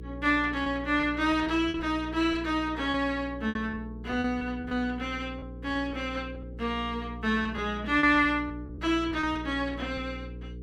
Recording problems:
mains hum; 60 Hz, harmonics up to 480 Hz, SNR 13 dB
lost packets; 7% of the sound replaced, filled with repeated pitch periods

